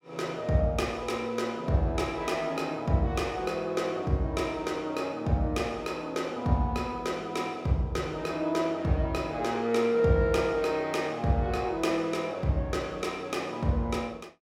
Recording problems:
none

